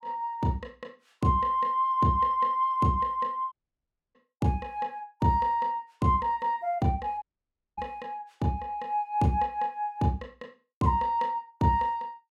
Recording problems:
audio cutting out; at 3.5 s for 0.5 s and at 7 s for 0.5 s

